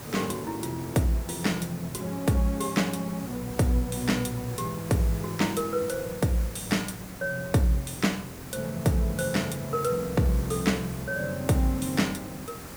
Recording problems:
background hiss; slope -4 dB per octave, SNR 13 dB

